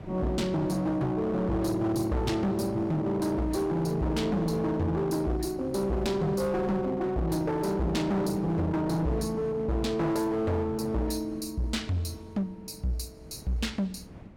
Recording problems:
distorted audio; hard clipping, uneven, signal-to-distortion ratio 7 dB
wind on the microphone; below 410 Hz, SNR 18 dB

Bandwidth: 17 kHz